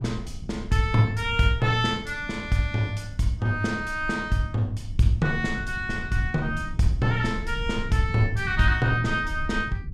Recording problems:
low-frequency rumble; below 94 Hz, SNR 11 dB

